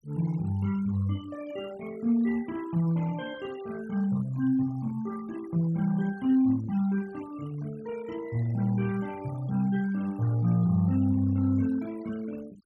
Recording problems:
noise reduction artefacts; signal-to-artefact ratio 22 dB

